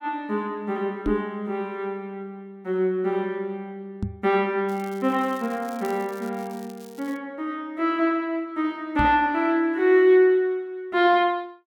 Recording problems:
microphone thump; at 1 s, at 4 s and at 9 s; peak +1 dB vs average level
crackle; from 4.5 to 7 s; loose cable, SNR 25 dB

